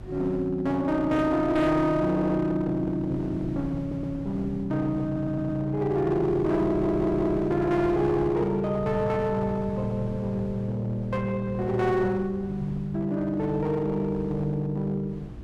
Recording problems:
distortion; hard clipping, uneven, signal-to-distortion ratio 9 dB
hum; 60 Hz, harmonics up to 360 Hz, SNR 22 dB
wind on the microphone; below 220 Hz, SNR 16 dB
stutter; 4 times, first at 2 s

